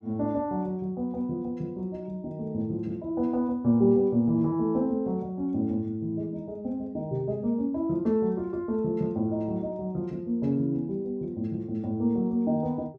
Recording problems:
none

